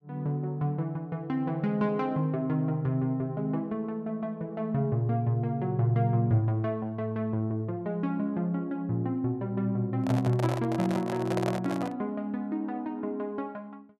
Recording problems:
microphone handling noise; from 10 to 12 s; peak +1 dB vs average level

